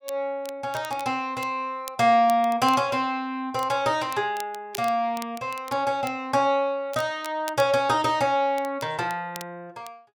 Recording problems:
crackle; vinyl, SNR 19 dB

